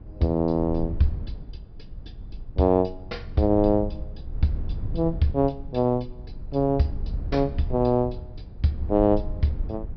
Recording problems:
treble cut off; nothing above 5.5 kHz
low-frequency rumble; below 78 Hz, SNR 11 dB

